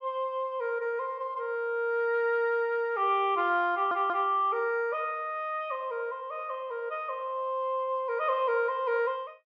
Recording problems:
audio stuttering; at 3.5 s

